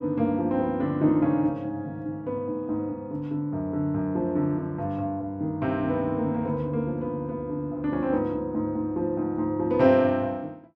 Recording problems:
none

